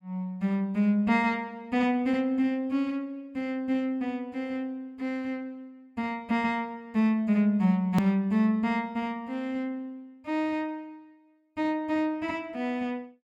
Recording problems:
click at an edit; at 8 s

